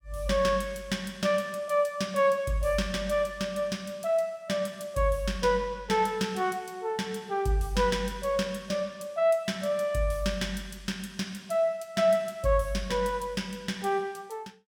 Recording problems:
none

